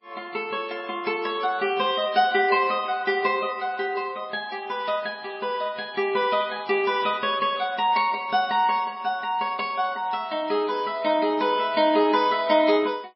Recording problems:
codec artefacts; MP3, log-spectral distance 3 dB, nothing above 4.8 kHz

